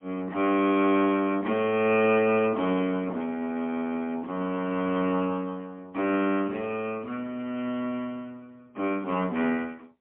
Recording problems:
telephone audio; 190 Hz to 3.3 kHz, AMR-NB, then MP3

